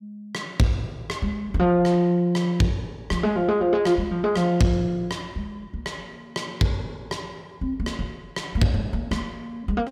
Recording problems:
distortion; soft clipping, signal-to-distortion ratio 11 dB

